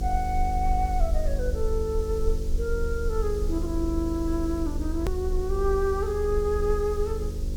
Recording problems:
hum; 50 Hz, harmonics up to 550 Hz, SNR 7 dB
background hiss; SNR 19 dB
rumble; below 70 Hz, strongest tone 28 Hz, SNR 3 dB
click at an edit; at 5 s

